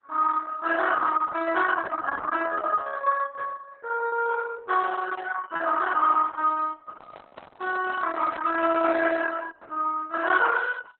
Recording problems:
lossy compression; Opus, then Opus, log-spectral distance 4 dB
lost packets; 0.8% of the sound replaced, filled with repeated pitch periods
handling noise; from 7 to 9 s; peak -8 dB vs average level

